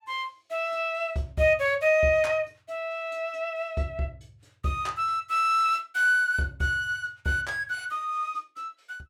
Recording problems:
none

